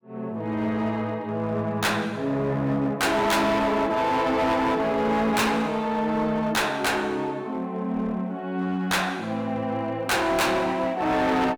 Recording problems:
distorted audio; hard clipping, uneven, signal-to-distortion ratio 7 dB

